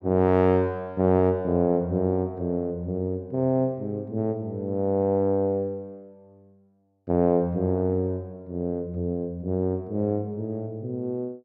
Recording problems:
none

